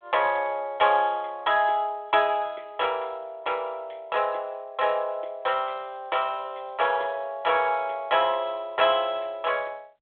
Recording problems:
telephone audio; 370 Hz to 3.5 kHz, G.726

